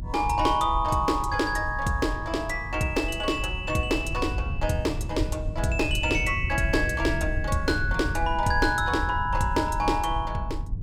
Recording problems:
rumble; below 94 Hz, SNR 7 dB

